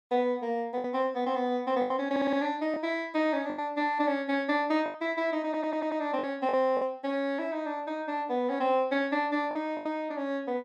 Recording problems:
packet loss; 6% of the sound replaced, filled with the last packet
stutter; at 2 s and at 5.5 s

